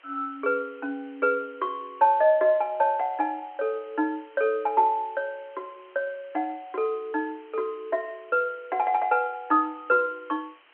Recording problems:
phone line; 280 Hz to 3.5 kHz, G.711
hiss; SNR 29 dB

